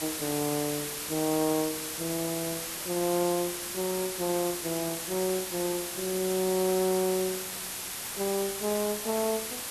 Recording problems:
codec artefacts; Vorbis, log-spectral distance 16 dB
hiss; slope 0 dB per octave, SNR 3 dB

